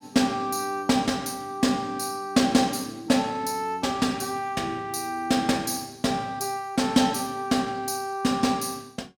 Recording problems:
none

